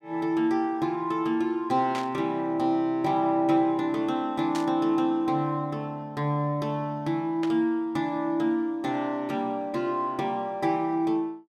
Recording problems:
static burst; at 2 s, at 4.5 s and at 7.5 s; peak -6 dB vs average level

